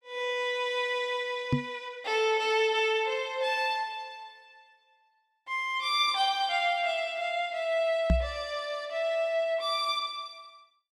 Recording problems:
knock on the microphone; at 1.5 s and at 8 s; peak +6 dB vs average level

